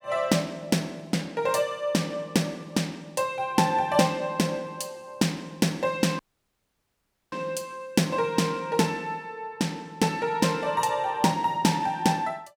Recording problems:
audio cutting out; at 6 s for 1 s

